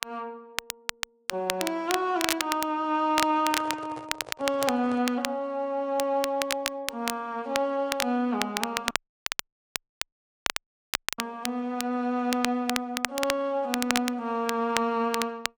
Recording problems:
lossy codec; MP3, then Vorbis, log-spectral distance 2 dB
crackling; vinyl, SNR 4 dB
microphone handling noise; from 3.5 to 5 s; peak -7 dB vs average level
dropout; at 9 s for 2.5 s

